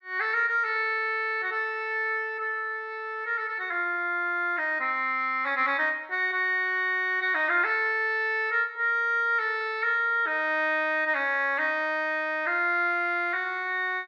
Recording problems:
none

